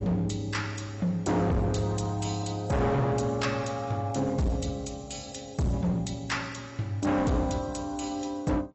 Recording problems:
lossy codec; AAC, log-spectral distance 4 dB, nothing above 7.8 kHz
distortion; hard clipping, uneven, signal-to-distortion ratio 7 dB

